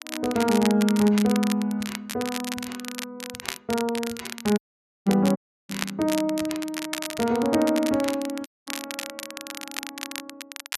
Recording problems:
crackle; vinyl, SNR 9 dB
dropout; at 4.5 s, at 5.5 s and at 8.5 s

